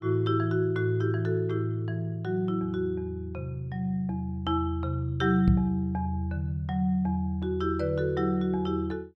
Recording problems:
knock on the microphone; at 5.5 s; peak +8 dB vs average level

